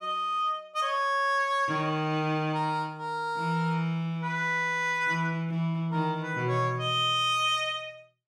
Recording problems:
none

